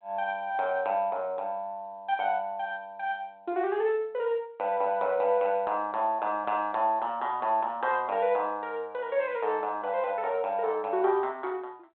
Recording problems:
telephone audio; 280 Hz to 3.7 kHz, G.726

